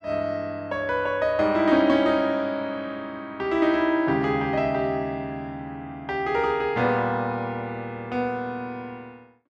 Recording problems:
none

